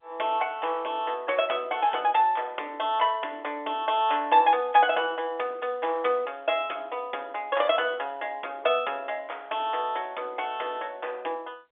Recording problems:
phone line; 280 Hz to 3.5 kHz, G.711

